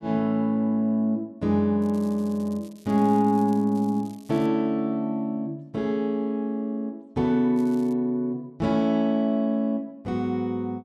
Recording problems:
crackling; from 2 to 4.5 s and at 7.5 s; loose cable, SNR 28 dB

